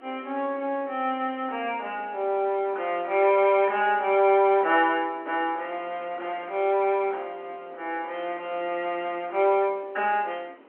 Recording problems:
phone line; 220 Hz to 3.3 kHz, G.711
background hiss; SNR 27 dB

